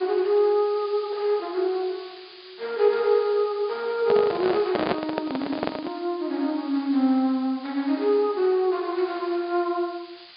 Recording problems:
low-pass filter; nothing above 4.8 kHz
background hiss; SNR 21 dB
microphone handling noise; from 4 to 6 s; peak +3 dB vs average level

